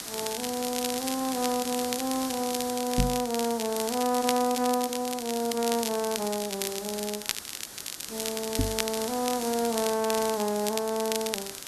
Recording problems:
background hiss; SNR 8 dB
crackling; vinyl, SNR 5 dB
microphone bump; at 3 s and at 8.5 s; peak +6 dB vs average level

